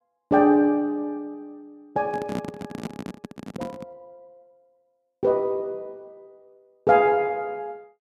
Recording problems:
microphone handling noise; from 2 to 4 s; peak -3 dB vs average level

